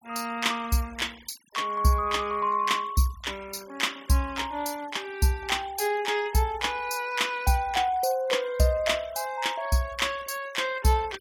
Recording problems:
noise reduction artefacts; signal-to-artefact ratio 22 dB

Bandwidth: 17.5 kHz